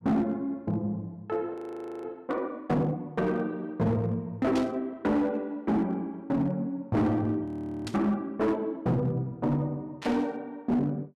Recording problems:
distortion; hard clipping, signal-to-distortion ratio 10 dB
audio freezing; at 1.5 s for 0.5 s and at 7.5 s
burst of static; at 4.5 s, at 8 s and at 10 s; peak -5 dB vs average level

